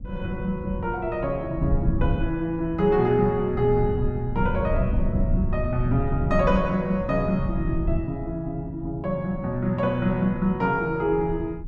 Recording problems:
rumble; below 110 Hz, SNR 6 dB

